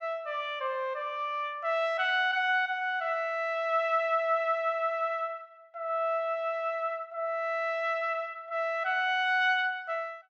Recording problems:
none

